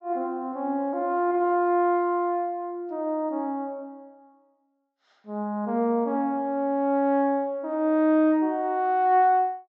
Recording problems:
treble missing; nothing above 8 kHz

